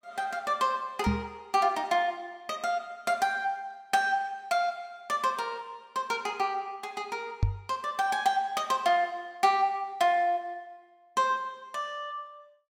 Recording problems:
microphone thump; at 1 s and at 7.5 s; peak +7 dB vs average level

